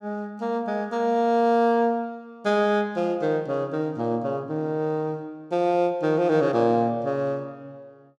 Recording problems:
none

